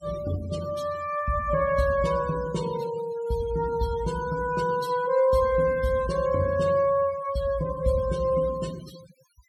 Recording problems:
denoising artefacts; signal-to-artefact ratio 17 dB

